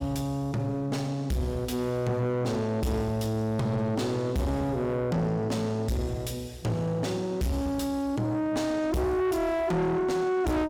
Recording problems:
distorted audio; soft clipping, signal-to-distortion ratio 6 dB

